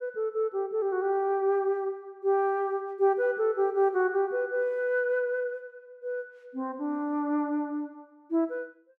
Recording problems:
none

